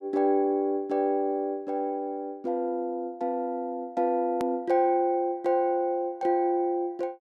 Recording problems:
click at an edit; at 4.5 s

